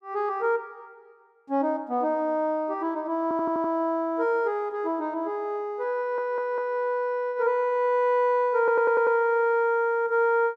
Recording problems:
audio stuttering; at 3 s, at 6 s and at 8.5 s

